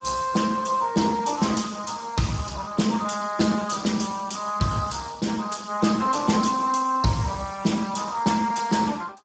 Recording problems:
lossy codec; Speex, log-spectral distance 7 dB, nothing above 7.6 kHz

